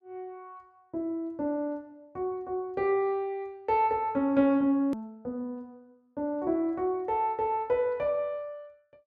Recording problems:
click at an edit; at 5 s

